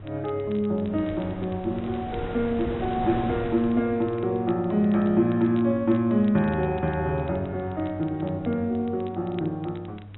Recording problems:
treble missing; nothing above 3.9 kHz
electrical hum; 50 Hz, harmonics up to 500 Hz, SNR 18 dB
wind noise; below 710 Hz, SNR 14 dB
crackle; vinyl, SNR 28 dB

